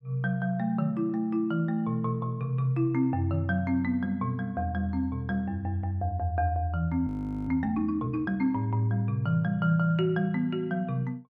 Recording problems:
audio freezing; at 7 s

